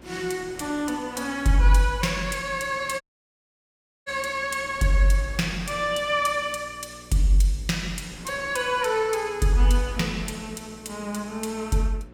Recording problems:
electrical hum; 60 Hz, harmonics up to 540 Hz, SNR 24 dB
wind noise; below 1.5 kHz, SNR 24 dB
audio cutting out; at 3 s for 1 s

